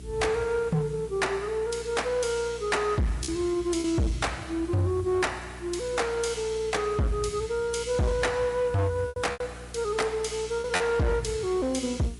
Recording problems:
codec artefacts; MP3, log-spectral distance 4 dB, nothing above 11 kHz
distorted audio; hard clipping, signal-to-distortion ratio 7 dB
electrical hum; 60 Hz, harmonics up to 420 Hz, SNR 17 dB
hiss; slope 0 dB per octave, SNR 24 dB
lost packets; 3% of the sound replaced, filled with repeated pitch periods

